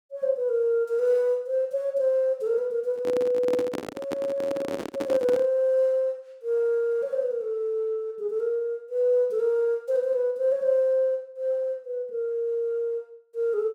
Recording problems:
handling noise; from 3 to 5.5 s; peak -2 dB vs average level

